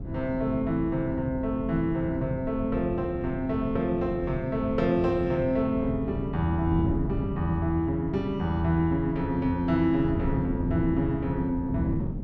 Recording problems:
wind on the microphone; below 210 Hz, SNR 7 dB

